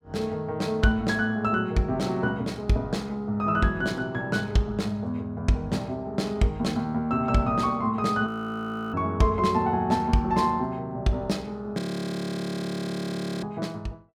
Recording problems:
frozen audio; at 8.5 s for 0.5 s and at 12 s for 1.5 s

